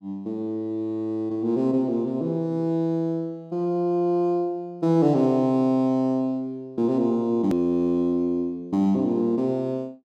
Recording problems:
edit click; at 7.5 s

